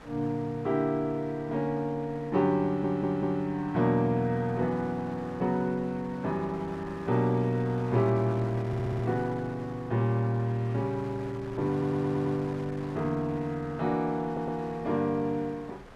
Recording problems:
wind on the microphone; below 1.5 kHz, SNR 18 dB
audio stuttering; 4 times, first at 2.5 s

